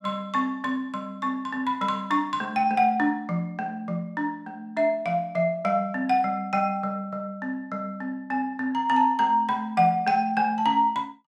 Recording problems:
none

